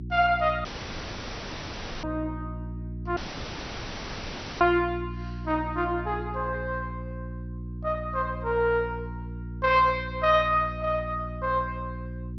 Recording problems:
lossy codec; MP2, log-spectral distance 5 dB, nothing above 4.9 kHz
electrical hum; 60 Hz, harmonics up to 360 Hz, SNR 10 dB
dropout; at 0.5 s for 1.5 s and at 3 s for 1.5 s

